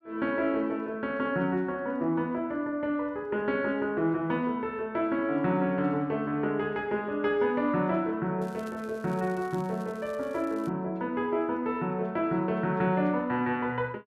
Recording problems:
crackle; from 8.5 to 11 s; loose cable, SNR 26 dB

